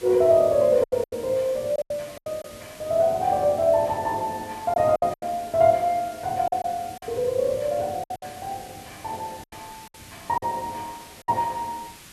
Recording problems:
background hiss; slope 0 dB per octave, SNR 20 dB
packet loss; 8% of the sound replaced, filled with silence

